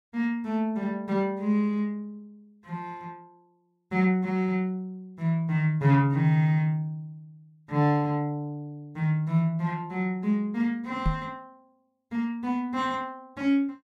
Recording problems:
microphone bump; at 11 s; peak +3 dB vs average level

